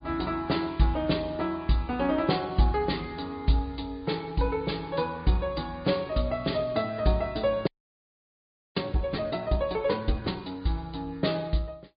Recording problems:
low-pass filter; nothing above 4.8 kHz
lossy compression; MP3, log-spectral distance 3 dB
audio freezing; at 7.5 s for 1 s

